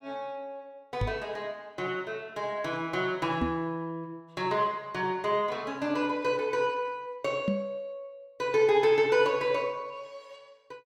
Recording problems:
microphone bump; at 1 s, at 3.5 s and at 7.5 s; peak +3 dB vs average level

